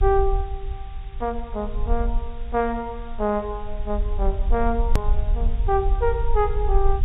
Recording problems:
low-pass filter; nothing above 4 kHz
background hiss; SNR 25 dB
rumble; below 50 Hz, SNR 1 dB
hard cut with a click; at 5 s

